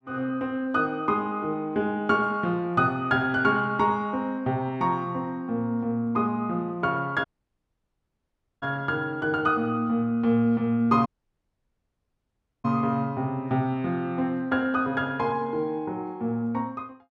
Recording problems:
dropout; at 7.5 s for 1.5 s and at 11 s for 1.5 s

